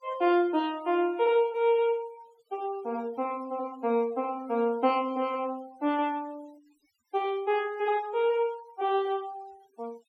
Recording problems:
noise reduction artefacts; signal-to-artefact ratio 25 dB

